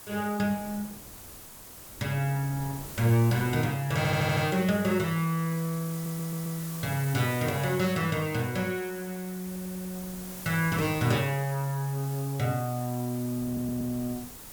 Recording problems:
hiss; slope -2 dB per octave, SNR 13 dB
wind noise; below 410 Hz, SNR 21 dB
stutter; 4 times, first at 4 s

